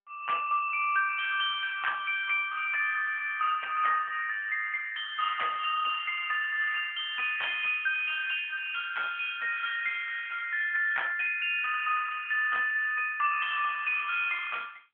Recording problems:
telephone audio; 650 Hz to 3.2 kHz, AMR-NB

